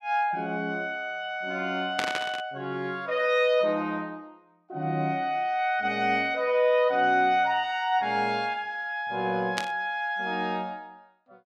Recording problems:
burst of static; at 2 s and at 9.5 s; peak +2 dB vs average level

